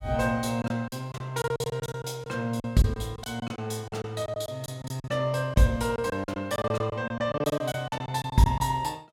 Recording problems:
packet loss; 14% of the sound replaced, filled with silence

